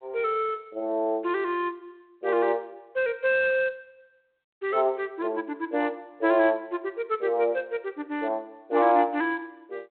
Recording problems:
phone line; 240 Hz to 3.6 kHz, G.726

